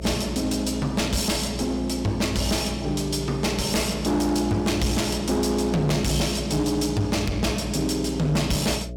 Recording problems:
distorted audio; hard clipping, uneven, signal-to-distortion ratio 7 dB
electrical hum; 60 Hz, harmonics up to 660 Hz, SNR 11 dB

